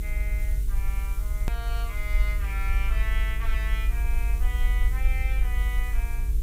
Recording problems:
hum; 60 Hz, harmonics up to 480 Hz, SNR 7 dB
background hiss; SNR 10 dB
low-frequency rumble; below 50 Hz, strongest tone 48 Hz, SNR -9 dB
hard cut with a click; at 1.5 s

